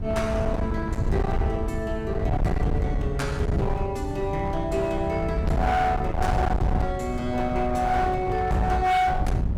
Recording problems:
distorted audio; hard clipping, uneven, signal-to-distortion ratio 7 dB
wind on the microphone; below 170 Hz, SNR 3 dB

